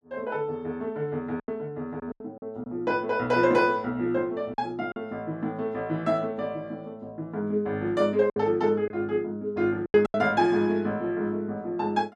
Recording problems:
packet loss; 5% of the sound replaced, filled with silence

